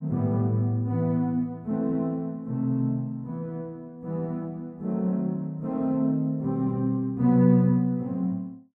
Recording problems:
none

